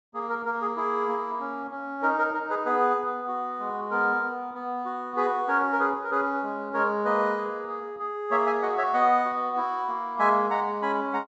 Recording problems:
treble missing; nothing above 7.7 kHz

